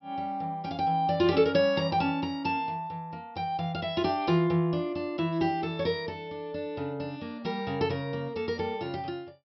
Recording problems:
treble missing; nothing above 5.6 kHz

